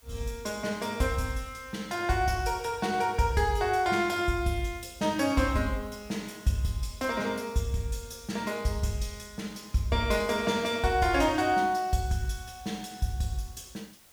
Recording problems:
hiss; slope 0 dB per octave, SNR 27 dB

